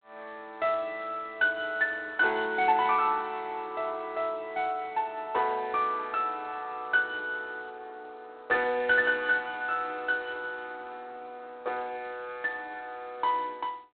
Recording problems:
telephone audio; 260 Hz to 3.5 kHz, G.726

